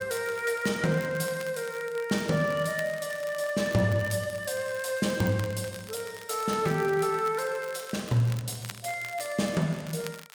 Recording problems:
crackling; vinyl, SNR 18 dB

